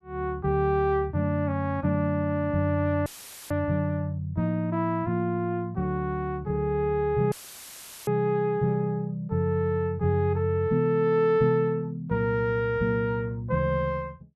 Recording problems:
audio cutting out; at 3 s and at 7.5 s for 1 s; filled with static

